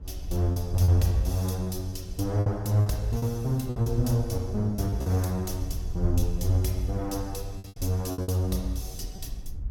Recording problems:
low-frequency rumble; below 72 Hz, SNR 16 dB
wind noise; below 70 Hz, SNR 11 dB
packet loss; 8% of the sound replaced, filled with repeated pitch periods

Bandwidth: 17 kHz